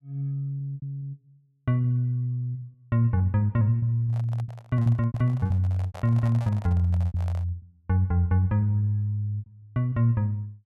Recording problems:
lost packets; 10% of the sound replaced, filled with repeated pitch periods
microphone handling noise; from 4 to 7.5 s; peak -12 dB vs average level

